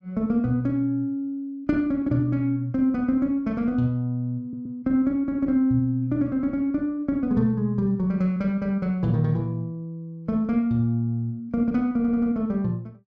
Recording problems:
audio stuttering; at 4.5 s and at 12 s

